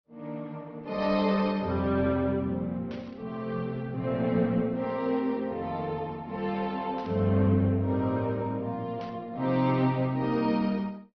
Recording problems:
treble cut off; nothing above 5 kHz
codec artefacts; Opus, log-spectral distance 2 dB
static burst; 4 times, first at 1 s; peak -15 dB vs average level

